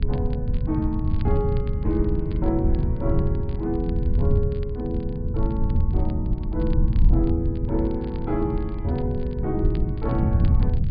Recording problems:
low-pass filter; nothing above 4.8 kHz
hum; 50 Hz, harmonics up to 550 Hz, SNR 24 dB
low-frequency rumble; below 110 Hz, SNR -2 dB
crackle; vinyl, SNR 26 dB

